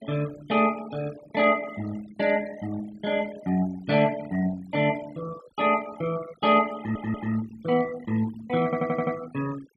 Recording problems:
denoising artefacts; signal-to-artefact ratio 17 dB
stutter; at 7 s and at 8.5 s

